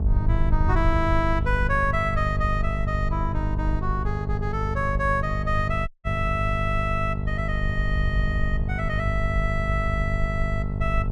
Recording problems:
electrical hum; 50 Hz, harmonics up to 900 Hz, SNR 1 dB
wind on the microphone; below 72 Hz, SNR 2 dB
dropout; at 6 s

